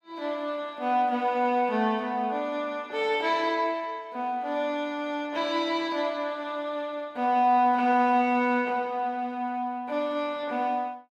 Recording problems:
none

